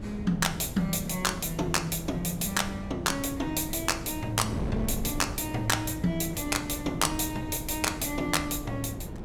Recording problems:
wind on the microphone; below 290 Hz, SNR 9 dB

